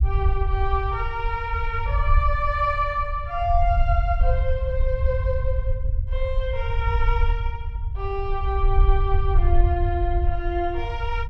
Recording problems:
low-frequency rumble; below 70 Hz, SNR -1 dB

